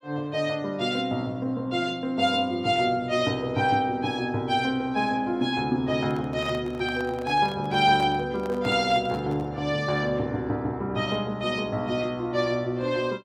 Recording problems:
handling noise; from 6 to 9.5 s; peak -9 dB vs average level

